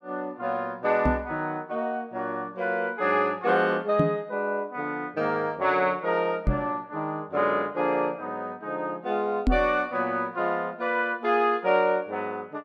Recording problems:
microphone thump; 4 times, first at 1 s; peak +6 dB vs average level

